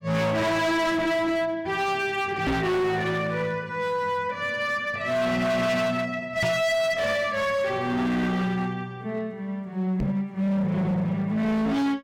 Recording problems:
distorted audio; hard clipping, signal-to-distortion ratio 7 dB
microphone bump; at 2.5 s, at 6.5 s and at 10 s; peak +3 dB vs average level

